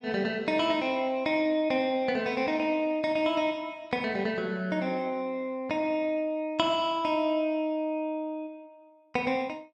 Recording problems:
none

